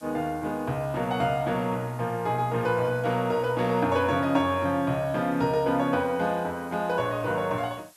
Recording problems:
background hiss; slope +2 dB per octave, SNR 27 dB

